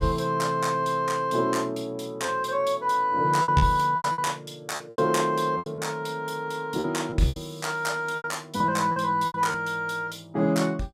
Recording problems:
packet loss; 8% of the sound replaced, filled with repeated pitch periods

